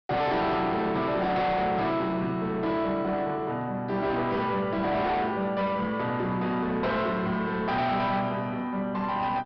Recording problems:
treble missing; nothing above 5.5 kHz
distorted audio; soft clipping, signal-to-distortion ratio 6 dB

